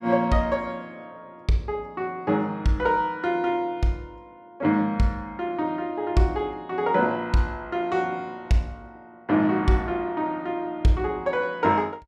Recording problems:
none

